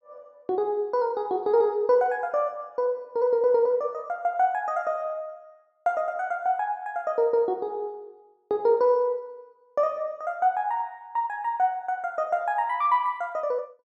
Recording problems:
none

